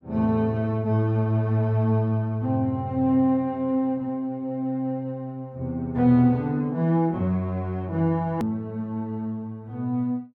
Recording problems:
edit click; at 8.5 s

